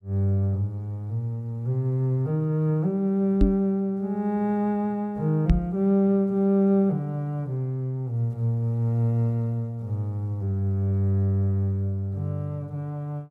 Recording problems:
knock on the microphone; at 3.5 s and at 5.5 s; peak +7 dB vs average level

